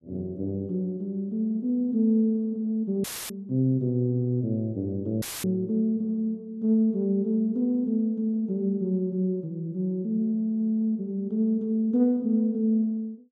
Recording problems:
audio cutting out; at 3 s and at 5 s; filled with static

